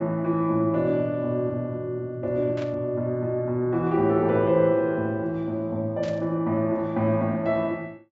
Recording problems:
treble missing; nothing above 8 kHz
burst of static; at 2.5 s and at 6 s; peak -13 dB vs average level

